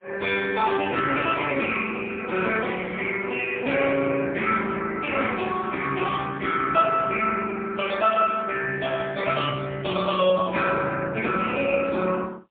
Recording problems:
phone line; 240 Hz to 3.5 kHz, AMR-NB, then MP3

